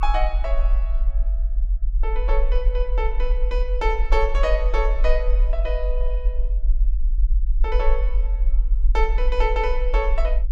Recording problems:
rumble; below 44 Hz, SNR -4 dB

